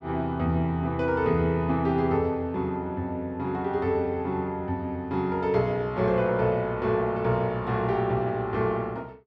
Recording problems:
none

